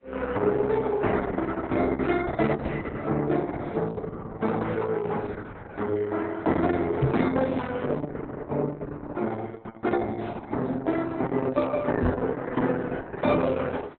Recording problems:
codec artefacts; AAC, then Opus, log-spectral distance 4 dB, nothing above 3.9 kHz
microphone bump; at 7 s and at 12 s; peak +8 dB vs average level

